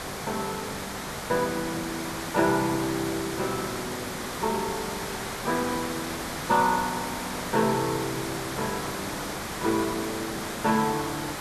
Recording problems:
hiss; SNR 4 dB

